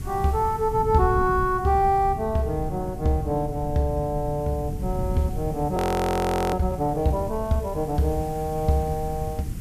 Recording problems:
hiss; SNR 24 dB
wind noise; below 160 Hz, SNR 9 dB
audio freezing; at 6 s for 1 s

